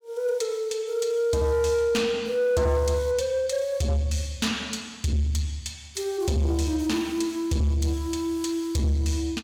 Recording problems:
distortion; soft clipping, signal-to-distortion ratio 10 dB

